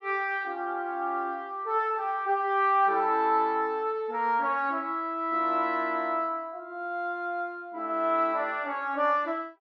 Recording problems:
none

